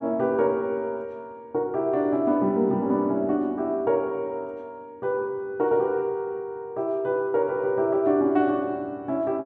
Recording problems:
none

